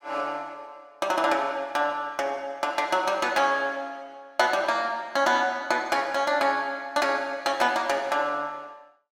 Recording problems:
none

